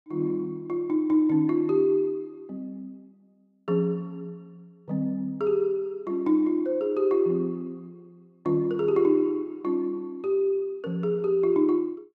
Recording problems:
none

